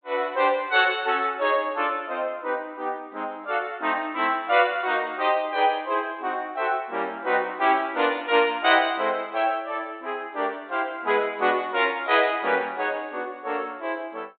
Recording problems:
low-pass filter; nothing above 4 kHz

